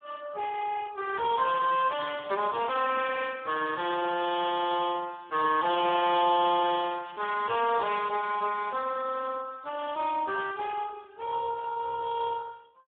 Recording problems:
telephone audio; 240 Hz to 3.6 kHz, Speex
crackling; from 1.5 to 3 s and from 5.5 to 8.5 s; loose cable, SNR 22 dB

